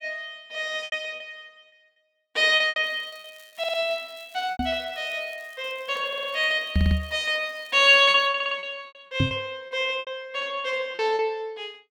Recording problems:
packet loss; 8% of the sound replaced, filled with repeated pitch periods
crackle; from 3 to 8.5 s; loose cable, SNR 29 dB
audio stuttering; 4 times, first at 3.5 s
knock on the microphone; at 4.5 s, at 7 s and at 9 s; peak +4 dB vs average level

